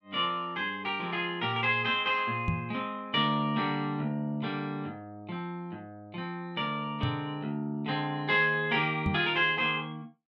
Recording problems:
knock on the microphone; at 2.5 s, at 7 s and at 9 s; peak +3 dB vs average level

